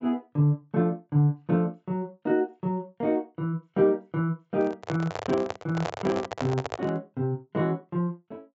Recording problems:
treble missing; nothing above 7.7 kHz
microphone handling noise; from 4.5 to 7 s; peak 0 dB vs average level

